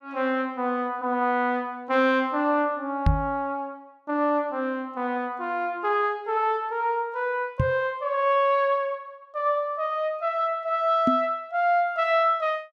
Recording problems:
knock on the microphone; at 3 s, at 7.5 s and at 11 s; peak +7 dB vs average level

